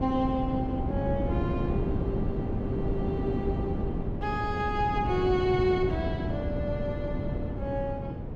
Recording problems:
wind on the microphone; below 290 Hz, SNR 0 dB

